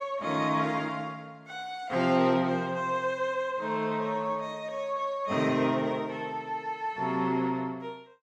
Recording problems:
none

